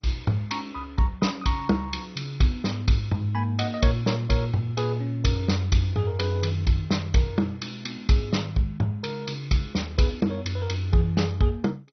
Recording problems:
codec artefacts; MP2, log-spectral distance 3 dB, nothing above 6 kHz

